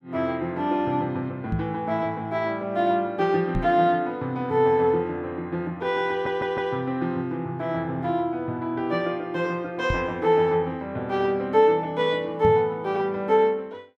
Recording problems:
microphone bump; 4 times, first at 1.5 s; peak +1 dB vs average level
audio stuttering; at 6 s

